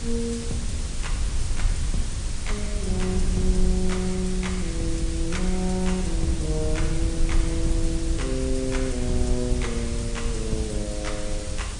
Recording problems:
codec artefacts; MP3, log-spectral distance 8 dB, nothing above 10.1 kHz
hum; 60 Hz, harmonics up to 600 Hz, SNR 13 dB
background hiss; slope +1 dB per octave, SNR 7 dB
low-frequency rumble; below 66 Hz, SNR 0 dB

